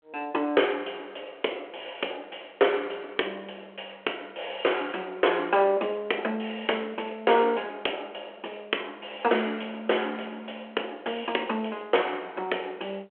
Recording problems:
telephone audio; 320 Hz to 3.3 kHz, G.726

